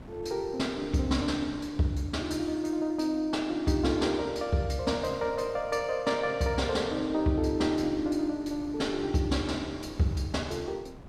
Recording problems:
wind on the microphone; below 350 Hz, SNR 20 dB

